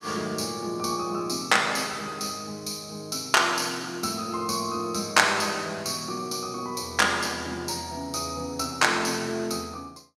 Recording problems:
none

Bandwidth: 16 kHz